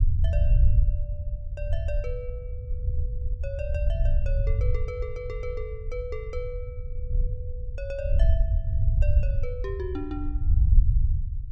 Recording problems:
rumble; below 74 Hz, SNR -10 dB

